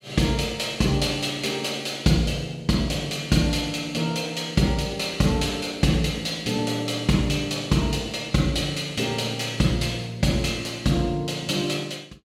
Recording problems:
none

